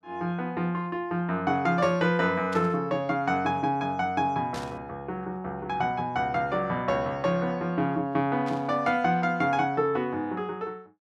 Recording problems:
burst of static; at 2.5 s, at 4.5 s and at 8.5 s; peak -10 dB vs average level

